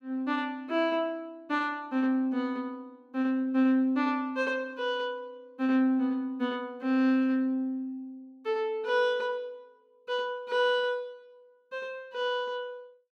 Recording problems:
none

